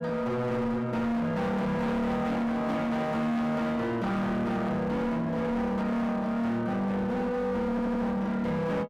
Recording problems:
distortion; hard clipping, signal-to-distortion ratio 8 dB
audio stuttering; at 7.5 s

